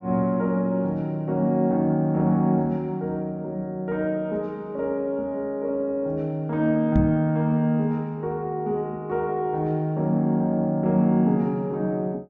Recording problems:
treble cut off; nothing above 7.3 kHz
microphone thump; at 7 s; peak +5 dB vs average level

